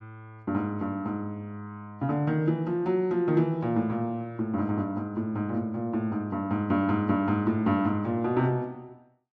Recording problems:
none

